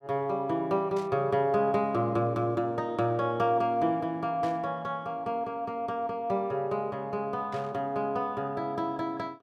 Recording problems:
burst of static; at 1 s, at 4.5 s and at 7.5 s; peak -13 dB vs average level

